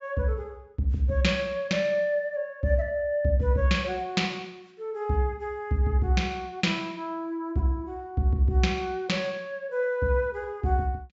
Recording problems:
treble cut off; nothing above 8 kHz

